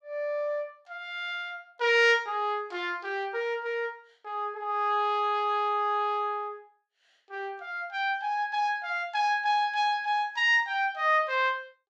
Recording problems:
none

